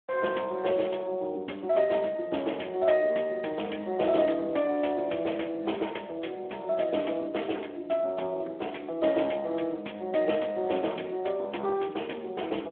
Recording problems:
phone line; 240 Hz to 3.3 kHz, Speex

